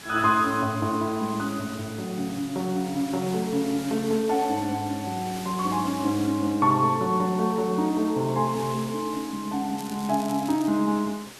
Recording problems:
hiss; slope -2 dB per octave, SNR 15 dB
crackling; at 10 s; loose cable, SNR 18 dB

